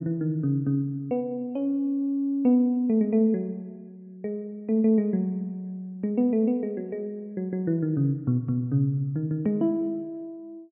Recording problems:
treble cut off; nothing above 3.2 kHz

